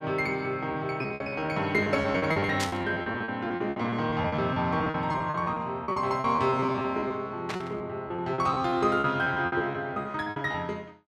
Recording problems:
packet loss; 18% of the sound replaced, filled with repeated pitch periods
static burst; at 2.5 s and at 7.5 s; peak 0 dB vs average level

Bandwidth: 14.5 kHz